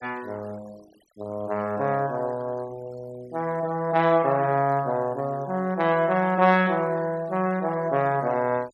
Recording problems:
noise reduction artefacts; signal-to-artefact ratio 25 dB

